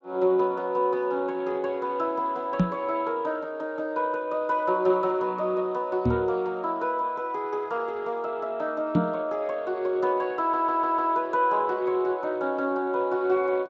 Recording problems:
lossy compression; Speex, log-spectral distance 2 dB
microphone bump; at 2.5 s, at 6 s and at 9 s; peak +7 dB vs average level
stutter; at 10 s

